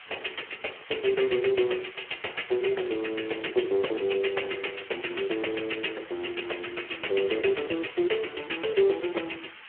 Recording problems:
telephone audio; 320 Hz to 3.4 kHz, Speex
background hiss; SNR 15 dB

